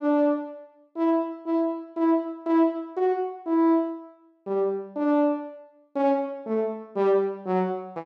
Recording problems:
none

